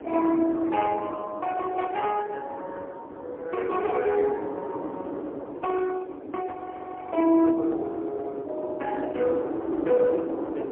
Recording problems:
telephone audio; 260 Hz to 2.3 kHz, AMR-NB, then MP3
wind on the microphone; below 490 Hz, SNR 9 dB
frozen audio; at 6.5 s for 0.5 s

